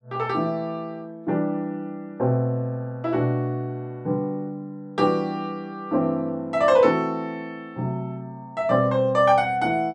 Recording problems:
none

